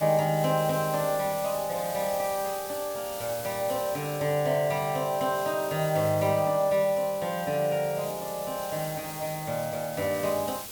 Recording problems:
hiss; slope -1 dB per octave, SNR 11 dB

